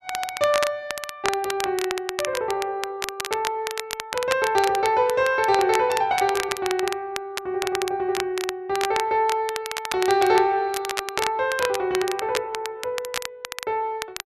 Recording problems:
crackle; vinyl, SNR 7 dB

